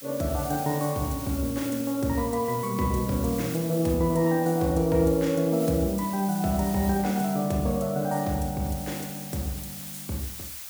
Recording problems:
background hiss; slope +3 dB per octave, SNR 12 dB

